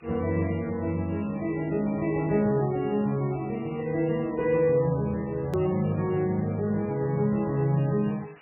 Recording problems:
codec artefacts; MP3, log-spectral distance 9 dB, nothing above 19.5 kHz
background hiss; SNR 27 dB
edit click; at 5.5 s

